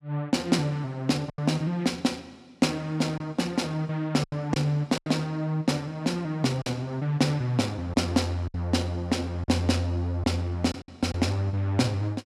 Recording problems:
packet loss; 5% of the sound replaced, filled with silence

